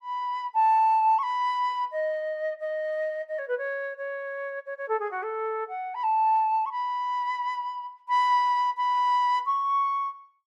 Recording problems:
none

